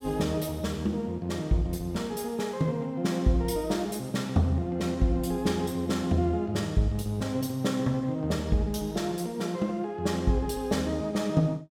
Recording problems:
none

